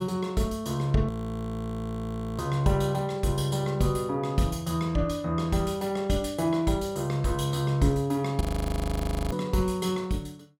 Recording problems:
audio freezing; at 1 s for 1.5 s and at 8.5 s for 1 s

